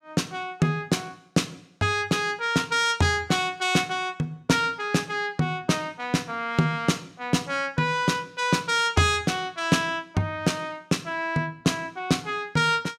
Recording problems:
none

